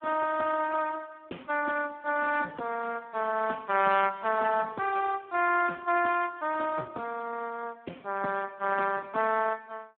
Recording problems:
telephone audio; 320 Hz to 2.7 kHz, Speex

